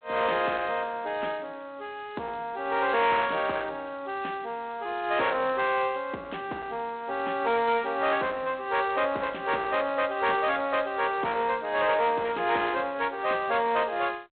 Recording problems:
phone line; 260 Hz to 3.9 kHz, G.726
distorted audio; hard clipping, uneven, signal-to-distortion ratio 11 dB

